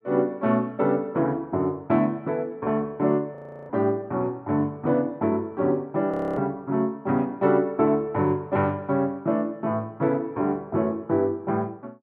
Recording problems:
audio freezing; at 3.5 s and at 6 s

